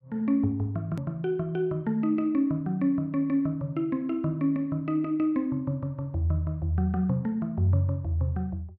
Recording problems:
hard cut with a click; at 1 s

